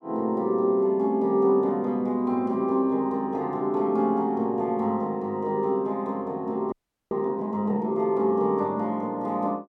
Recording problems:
frozen audio; at 6.5 s

